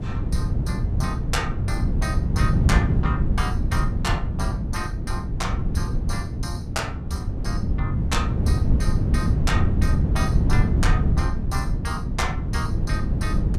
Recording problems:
wind on the microphone; below 150 Hz, SNR -7 dB

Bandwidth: 15.5 kHz